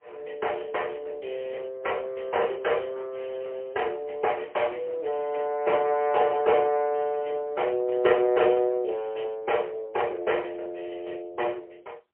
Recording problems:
phone line; 320 Hz to 3.1 kHz, AMR-NB, then MP3

